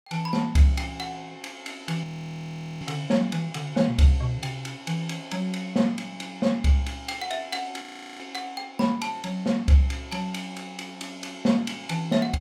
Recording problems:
frozen audio; at 2 s for 1 s and at 8 s

